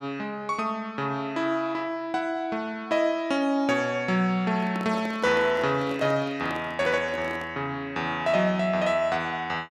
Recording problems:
handling noise; from 4.5 to 7.5 s; peak -7 dB vs average level

